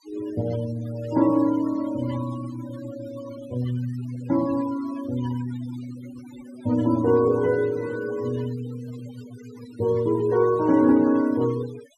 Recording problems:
noise reduction artefacts; signal-to-artefact ratio 18 dB

